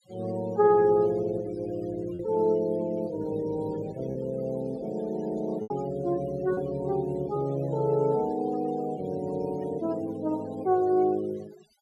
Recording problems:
noise reduction artefacts; signal-to-artefact ratio 22 dB
lost packets; 1.6% of the sound replaced, filled with repeated pitch periods

